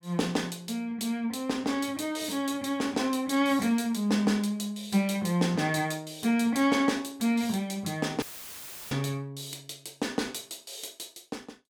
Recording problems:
audio cutting out; at 8 s for 0.5 s; filled with static

